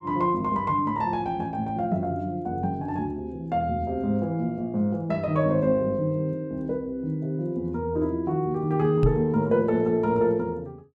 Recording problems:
microphone thump; at 9 s; peak +7 dB vs average level

